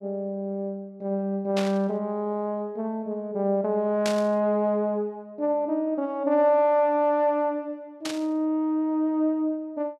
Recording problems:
static burst; at 1.5 s, at 4 s and at 8 s; peak -2 dB vs average level

